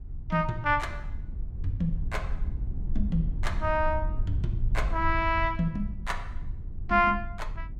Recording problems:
low-frequency rumble; below 68 Hz, SNR 6 dB

